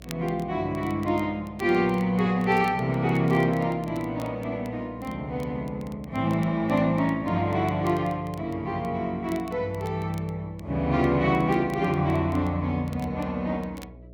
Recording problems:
electrical hum; 60 Hz, harmonics up to 660 Hz, SNR 22 dB
crackle; vinyl, SNR 27 dB

